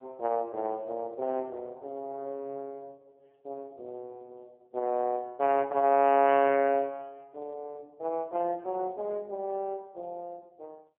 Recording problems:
telephone audio; 300 Hz to 3.2 kHz, AMR-NB

